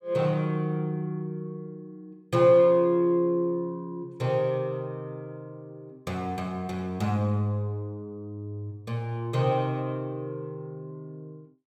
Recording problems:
none

